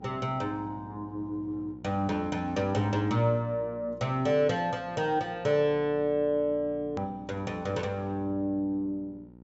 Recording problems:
treble missing; nothing above 8 kHz
hum; 60 Hz, harmonics up to 960 Hz, SNR 20 dB
hard cut with a click; at 7 s

